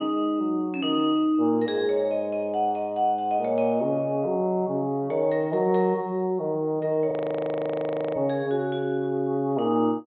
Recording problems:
treble cut off; nothing above 4 kHz
audio freezing; at 7 s for 1 s

